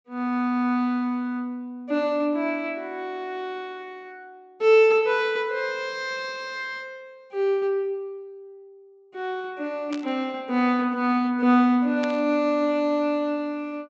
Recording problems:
treble cut off; nothing above 8 kHz
static burst; at 10 s and at 12 s; peak -7 dB vs average level

